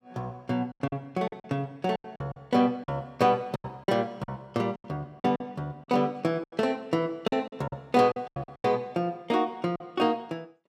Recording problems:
lost packets; 11% of the sound replaced, filled with silence

